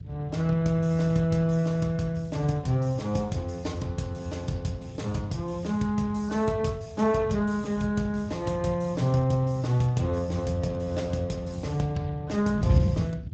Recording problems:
lossy compression; Speex, log-spectral distance 3 dB, nothing above 7.6 kHz
wind noise; below 150 Hz, SNR 8 dB

